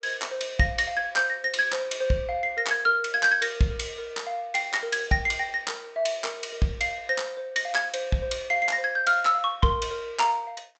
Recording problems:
low-pass filter; nothing above 8 kHz

